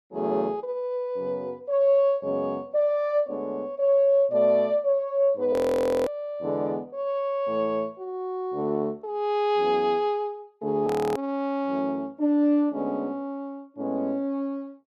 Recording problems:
audio freezing; at 5.5 s for 0.5 s and at 11 s

